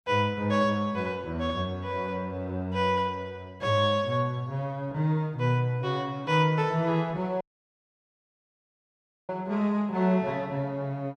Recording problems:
audio cutting out; at 7.5 s for 2 s

